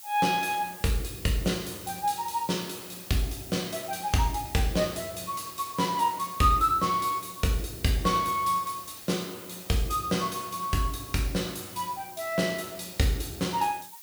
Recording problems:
hiss; slope +3 dB per octave, SNR 14 dB

